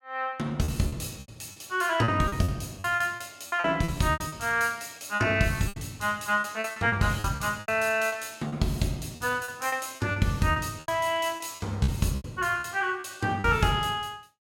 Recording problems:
lost packets; 13% of the sound replaced, filled with repeated pitch periods

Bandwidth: 16.5 kHz